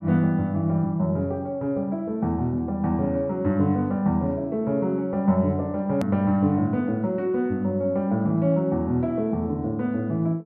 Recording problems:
hard cut with a click; at 6 s

